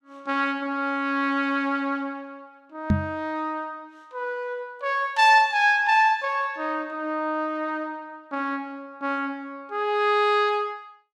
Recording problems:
microphone thump; at 3 s; peak +6 dB vs average level

